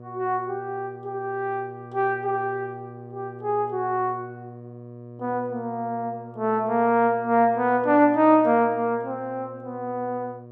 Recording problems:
hum; 60 Hz, harmonics up to 1.2 kHz, SNR 18 dB

